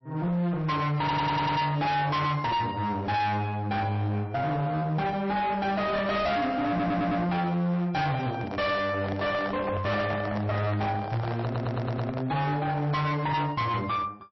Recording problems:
lossy codec; MP3, log-spectral distance 2 dB, nothing above 5.7 kHz
distorted audio; hard clipping, uneven, signal-to-distortion ratio 6 dB
audio stuttering; at 1 s, at 6.5 s and at 11 s
handling noise; from 8 to 12 s; peak -2 dB vs average level

